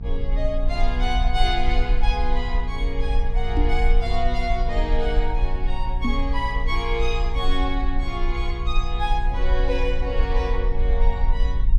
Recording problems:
hum; 60 Hz, harmonics up to 480 Hz, SNR 8 dB
rumble; below 42 Hz, strongest tone 18 Hz, SNR -2 dB
microphone thump; at 3.5 s and at 6 s; peak +7 dB vs average level

